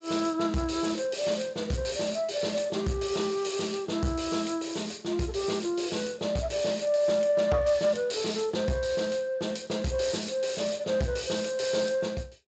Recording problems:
lossy codec; Speex, log-spectral distance 7 dB, nothing above 7.6 kHz
distorted audio; soft clipping, signal-to-distortion ratio 11 dB

